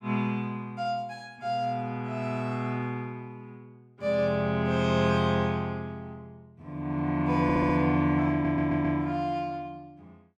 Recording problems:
audio stuttering; at 7.5 s and at 8.5 s

